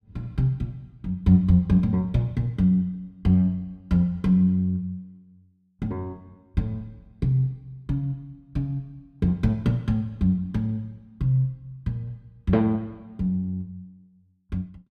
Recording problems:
none

